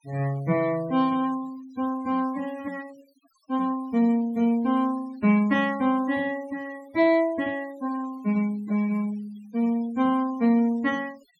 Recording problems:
noise reduction artefacts; signal-to-artefact ratio 23 dB

